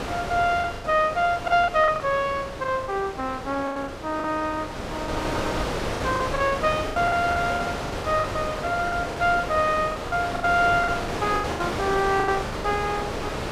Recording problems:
wind on the microphone; below 1.5 kHz, SNR 6 dB
lost packets; 13% of the sound replaced, filled with the last packet

